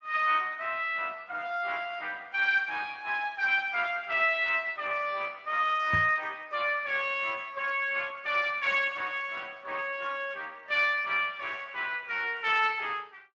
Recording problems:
codec artefacts; Speex, log-spectral distance 4 dB
microphone thump; at 6 s; peak -1 dB vs average level

